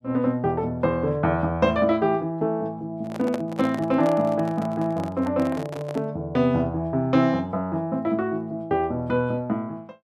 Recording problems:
microphone handling noise; from 3 to 6 s; peak -4 dB vs average level

